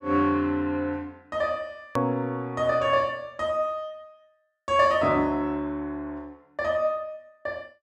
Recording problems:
click at an edit; at 2 s

